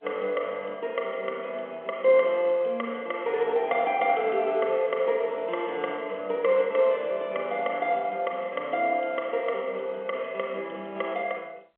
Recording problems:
telephone audio; 300 Hz to 3.5 kHz, G.711

